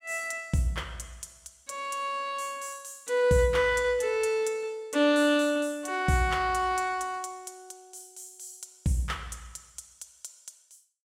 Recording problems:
none

